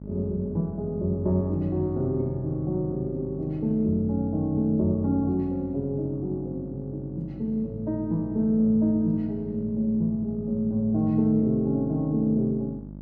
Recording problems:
hum; 50 Hz, harmonics up to 650 Hz, SNR 14 dB

